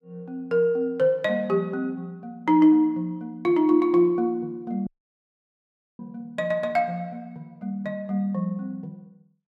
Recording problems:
dropout; at 5 s for 1 s

